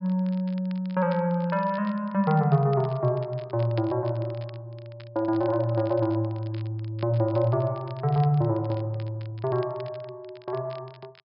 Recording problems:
treble missing; nothing above 5.5 kHz
crackling; vinyl, SNR 26 dB

